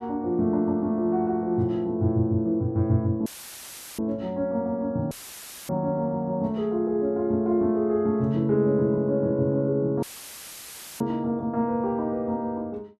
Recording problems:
dropout; at 3.5 s for 0.5 s, at 5 s for 0.5 s and at 10 s for 1 s; filled with static

